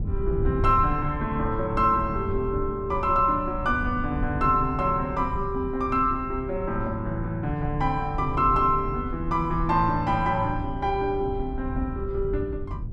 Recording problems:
rumble; below 110 Hz, SNR 8 dB

